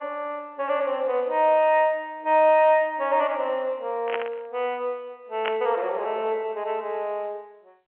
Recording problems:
phone line; 340 Hz to 3.3 kHz, G.711
static burst; at 4 s and at 5.5 s; peak -2 dB vs average level

